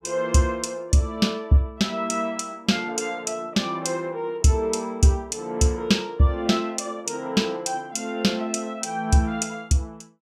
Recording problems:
none

